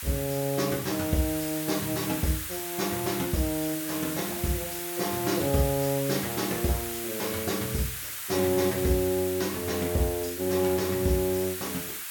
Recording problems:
hiss; SNR 5 dB

